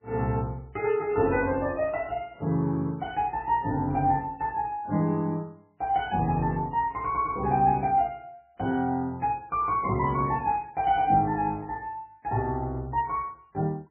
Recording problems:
lossy codec; MP3, log-spectral distance 2 dB, nothing above 2.5 kHz

